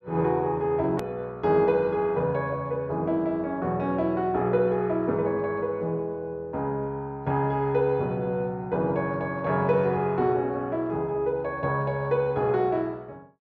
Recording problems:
low-pass filter; nothing above 7 kHz
edit click; at 1 s

